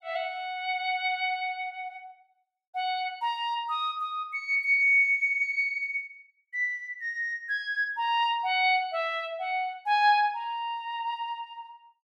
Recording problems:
none

